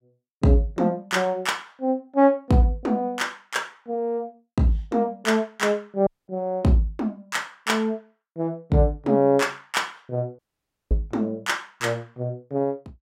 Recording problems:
audio cutting out; at 6 s and at 10 s for 0.5 s

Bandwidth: 16 kHz